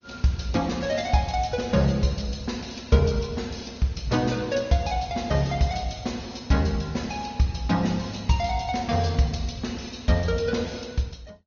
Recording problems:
treble missing; nothing above 6.3 kHz
lossy codec; Opus, log-spectral distance 5 dB

